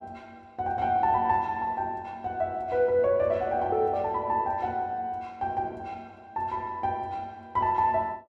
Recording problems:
none

